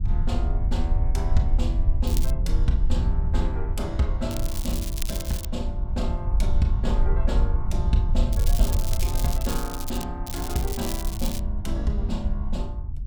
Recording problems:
low-frequency rumble; below 66 Hz, SNR -5 dB
crackling; 4 times, first at 2 s; loose cable, SNR 4 dB

